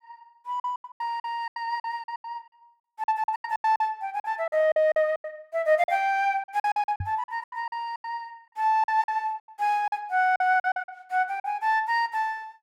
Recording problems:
packet loss; 17% of the sound replaced, filled with silence
microphone bump; at 7 s; peak -2 dB vs average level

